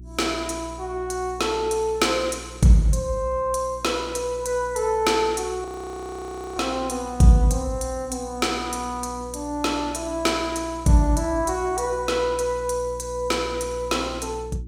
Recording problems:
electrical hum; 60 Hz, harmonics up to 360 Hz, SNR 17 dB
audio freezing; at 5.5 s for 1 s

